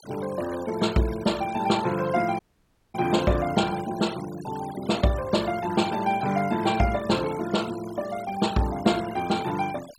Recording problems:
noise reduction artefacts; signal-to-artefact ratio 16 dB
audio cutting out; at 2.5 s for 0.5 s

